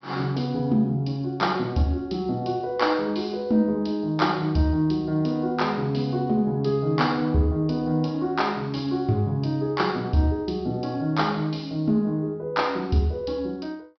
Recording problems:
treble cut off; nothing above 5.5 kHz

